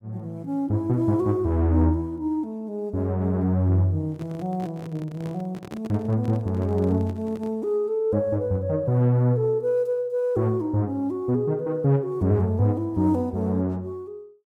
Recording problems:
handling noise; from 4 to 7.5 s; peak -9 dB vs average level

